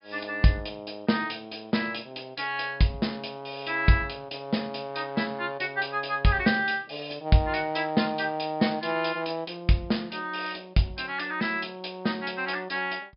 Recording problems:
treble missing; nothing above 5.2 kHz

